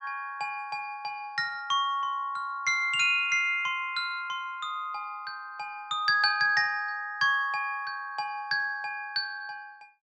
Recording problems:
low-pass filter; nothing above 8 kHz

